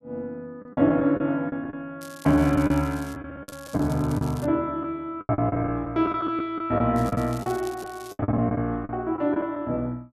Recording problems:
lost packets; 11% of the sound replaced, filled with the last packet
crackle; from 2 to 3 s, at 3.5 s and from 7 to 8 s; loose cable, SNR 21 dB

